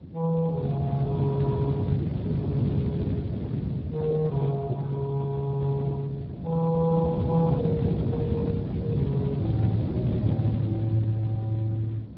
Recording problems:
lossy codec; MP2, then Speex, log-spectral distance 2 dB
wind noise; below 250 Hz, SNR 2 dB

